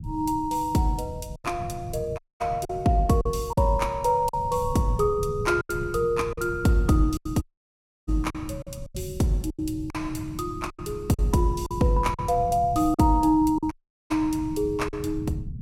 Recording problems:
rumble; below 160 Hz, SNR 12 dB
lost packets; 7% of the sound replaced, filled with silence
audio cutting out; at 2 s, at 7.5 s for 0.5 s and at 14 s

